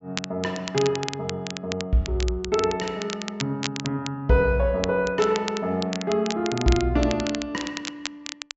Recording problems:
treble missing; nothing above 8 kHz
crackling; vinyl, SNR 9 dB

